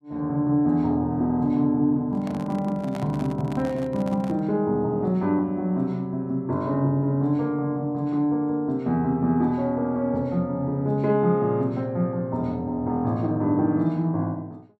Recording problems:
microphone handling noise; from 2 to 4.5 s; peak -8 dB vs average level

